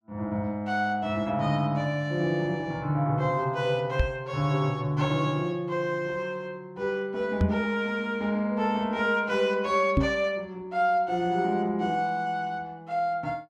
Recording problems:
microphone thump; at 4 s, at 7.5 s and at 10 s; peak +7 dB vs average level

